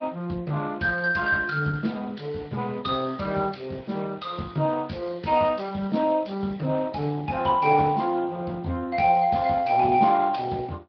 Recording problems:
low-pass filter; nothing above 5 kHz
lossy compression; Opus, then Speex, log-spectral distance 4 dB

